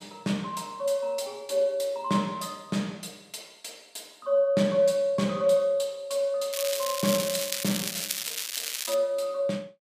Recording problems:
crackle; from 6.5 to 9 s; loose cable, SNR 3 dB

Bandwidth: 15 kHz